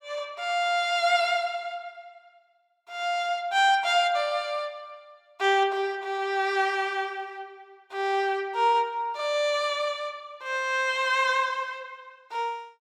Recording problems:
none

